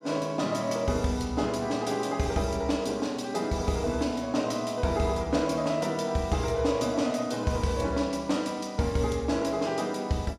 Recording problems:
none

